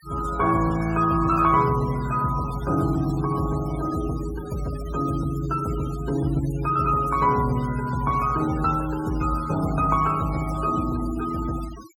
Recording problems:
noise reduction artefacts; signal-to-artefact ratio 18 dB

